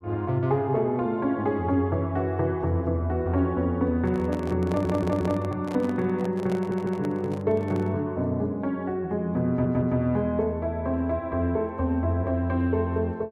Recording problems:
handling noise; from 4 to 8 s; peak -6 dB vs average level
stutter; at 4.5 s, at 6.5 s and at 9.5 s

